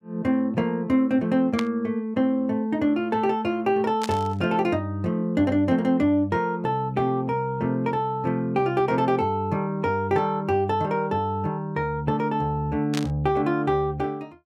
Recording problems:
burst of static; at 1.5 s, at 4 s and at 13 s; peak -2 dB vs average level

